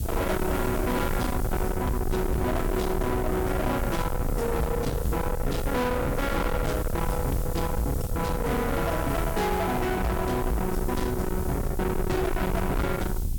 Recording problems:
distorted audio; soft clipping, signal-to-distortion ratio 6 dB
hiss; slope +5 dB per octave, SNR 16 dB
rumble; below 450 Hz, SNR 3 dB

